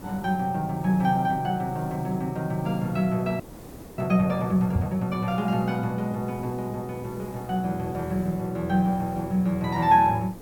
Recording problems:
background hiss; SNR 18 dB
frozen audio; at 3.5 s for 0.5 s
microphone thump; at 5 s; peak +5 dB vs average level

